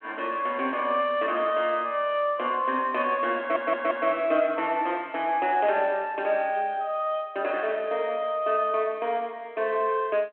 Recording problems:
telephone audio; 220 Hz to 3.3 kHz, G.726
audio stuttering; at 3.5 s

